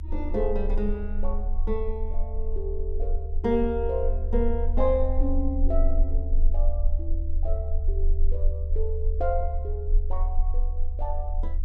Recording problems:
low-frequency rumble; below 40 Hz, strongest tone 20 Hz, SNR -2 dB

